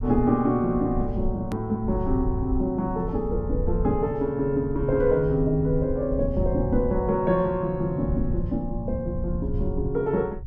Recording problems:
rumble; below 78 Hz, SNR 8 dB
hard cut with a click; at 1.5 s

